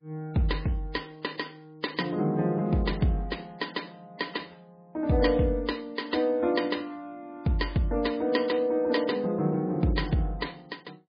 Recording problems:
codec artefacts; MP3, log-spectral distance 4 dB, nothing above 4.5 kHz

